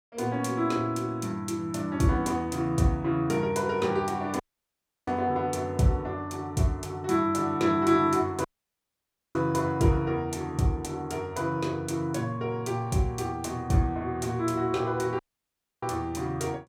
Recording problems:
audio cutting out; at 4.5 s for 0.5 s, at 8.5 s for 1 s and at 15 s for 0.5 s

